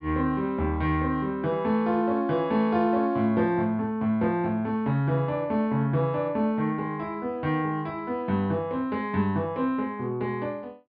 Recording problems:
treble missing; nothing above 5.5 kHz

